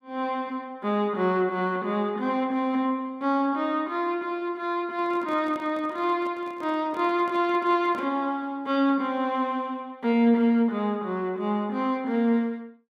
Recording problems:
handling noise; from 5 to 8 s; peak -12 dB vs average level

